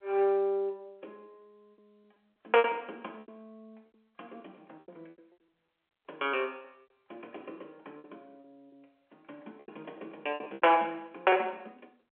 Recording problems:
phone line; 340 Hz to 3.3 kHz, G.711
lost packets; 9% of the sound replaced, filled with repeated pitch periods

